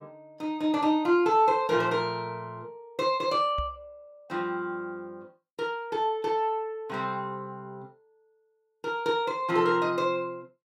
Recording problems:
knock on the microphone; at 3.5 s; peak -4 dB vs average level

